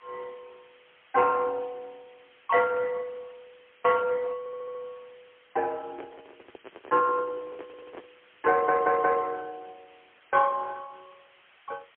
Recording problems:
telephone audio; 320 Hz to 2 kHz, AMR-NB, then MP3
hiss; SNR 30 dB
audio stuttering; at 4.5 s, at 7.5 s and at 8.5 s
microphone handling noise; from 6 to 8 s; peak -9 dB vs average level

